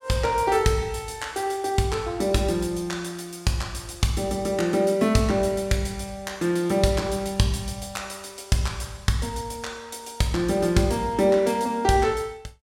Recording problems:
none

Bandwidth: 16.5 kHz